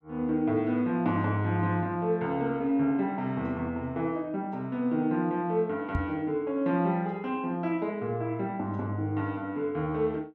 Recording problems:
microphone bump; at 6 s; peak +2 dB vs average level

